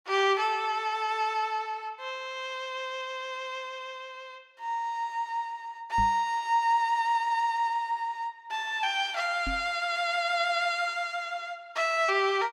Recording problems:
knock on the microphone; at 6 s and at 9.5 s; peak -3 dB vs average level

